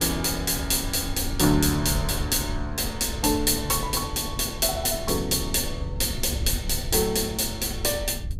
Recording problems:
wind noise; below 92 Hz, SNR 10 dB

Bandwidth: 15.5 kHz